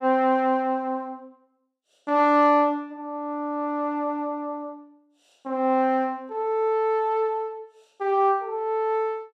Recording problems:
none

